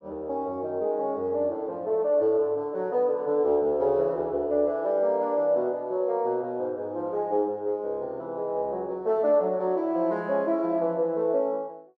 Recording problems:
none

